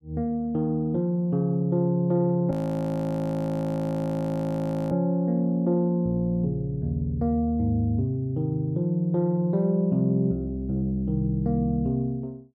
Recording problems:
frozen audio; at 2.5 s for 2.5 s

